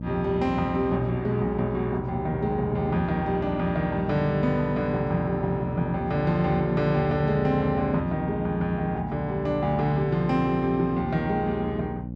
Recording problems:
mains hum; 60 Hz, harmonics up to 600 Hz, SNR 9 dB

